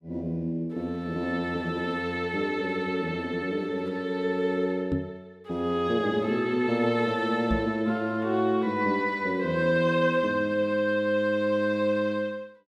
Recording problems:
microphone bump; at 5 s and at 7.5 s; peak +2 dB vs average level

